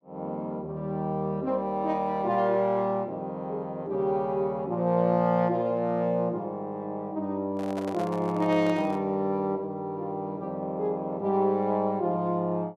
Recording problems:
handling noise; from 7.5 to 9 s; peak -6 dB vs average level

